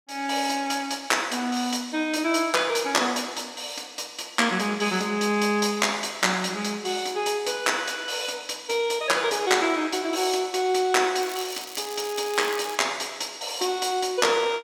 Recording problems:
crackling; from 11 to 13 s; loose cable, SNR 14 dB

